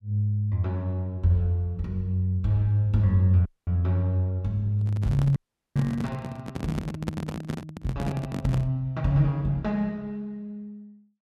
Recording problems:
audio cutting out; at 3.5 s and at 5.5 s
microphone handling noise; from 5 to 8.5 s; peak +1 dB vs average level

